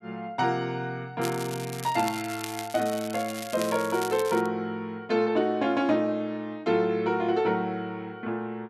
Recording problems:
crackle; from 1 to 4.5 s; loose cable, SNR 12 dB

